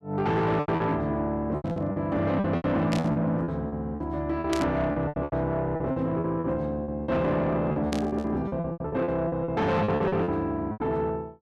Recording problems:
distortion; soft clipping, signal-to-distortion ratio 11 dB
packet loss; 16% of the sound replaced, filled with repeated pitch periods
burst of static; 4 times, first at 1.5 s; peak -2 dB vs average level

